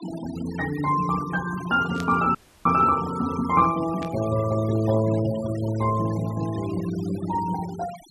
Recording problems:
denoising artefacts; signal-to-artefact ratio 16 dB
burst of static; at 2 s and at 4 s; peak -8 dB vs average level
audio cutting out; at 2.5 s

